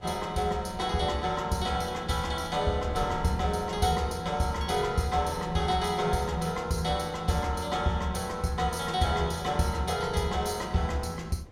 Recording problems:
wind on the microphone; below 290 Hz, SNR 17 dB

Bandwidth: 16 kHz